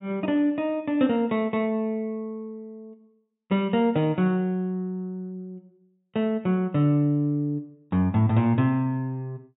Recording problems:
treble cut off; nothing above 4 kHz

